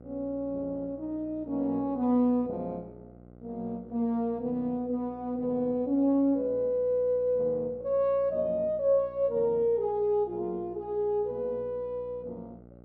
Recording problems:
electrical hum; 60 Hz, harmonics up to 840 Hz, SNR 22 dB

